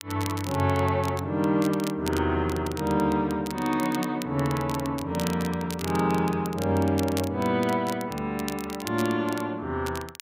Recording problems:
crackling; vinyl, SNR 14 dB

